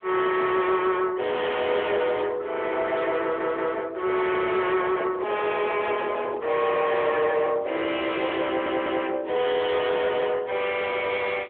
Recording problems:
phone line; 300 Hz to 3.4 kHz, AMR-NB
distortion; soft clipping, signal-to-distortion ratio 6 dB
audio stuttering; at 3 s and at 8.5 s
handling noise; from 5 to 8 s; peak -1 dB vs average level

